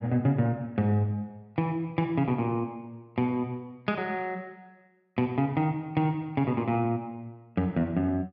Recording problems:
none

